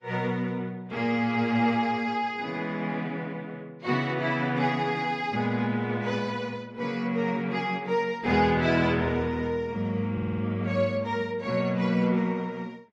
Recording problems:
codec artefacts; AAC, log-spectral distance 2 dB
audio stuttering; at 10 s

